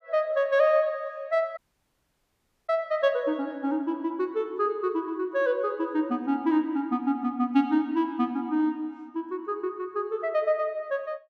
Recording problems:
audio cutting out; at 1.5 s for 1 s

